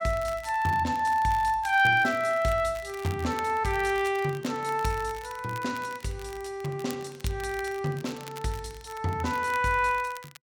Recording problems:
crackling; vinyl, SNR 19 dB

